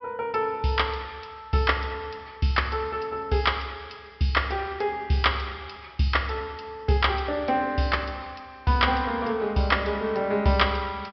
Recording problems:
treble cut off; nothing above 5.3 kHz

